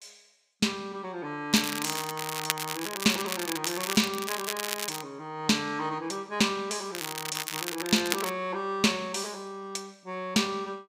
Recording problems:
crackle; from 1.5 to 5 s and from 7 to 8.5 s; loose cable, SNR 3 dB

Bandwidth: 15.5 kHz